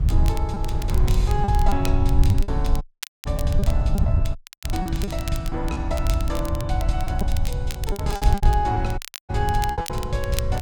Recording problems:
rumble; below 84 Hz, SNR -3 dB
wind noise; below 180 Hz, SNR 13 dB
crackle; vinyl, SNR 11 dB
lost packets; 9% of the sound replaced, filled with repeated pitch periods
audio cutting out; at 3 s, at 4.5 s and at 9 s

